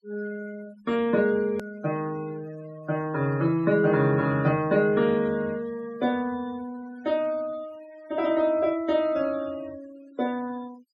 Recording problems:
noise reduction artefacts; signal-to-artefact ratio 22 dB
click at an edit; at 1.5 s

